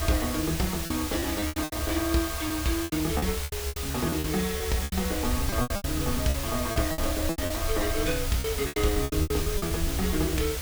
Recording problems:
hiss; slope -1 dB per octave, SNR 3 dB
low-frequency rumble; below 78 Hz, SNR 5 dB
lost packets; 14% of the sound replaced, filled with repeated pitch periods

